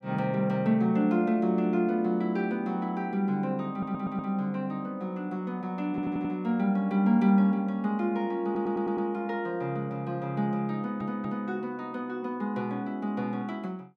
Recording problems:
stutter; 4 times, first at 3.5 s

